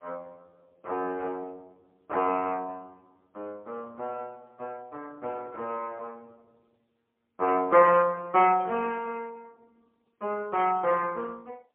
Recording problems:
telephone audio; 320 Hz to 3.1 kHz, AMR-NB, then MP3

